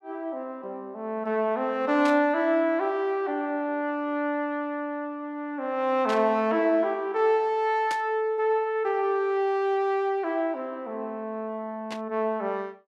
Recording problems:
static burst; 4 times, first at 2 s; peak -5 dB vs average level

